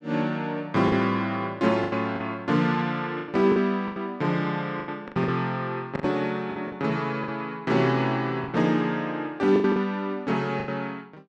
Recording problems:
packet loss; 9% of the sound replaced, filled with the last packet

